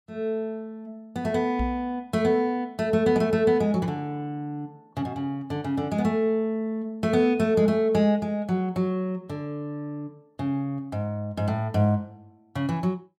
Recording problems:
knock on the microphone; at 1.5 s; peak -1 dB vs average level

